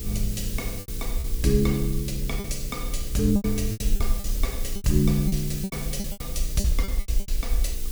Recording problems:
hum; 60 Hz, harmonics up to 480 Hz, SNR 15 dB
background hiss; slope +3 dB per octave, SNR 9 dB
rumble; below 48 Hz, SNR 4 dB
lost packets; 13% of the sound replaced, filled with repeated pitch periods
crackling; from 1 to 3 s; loose cable, SNR 25 dB

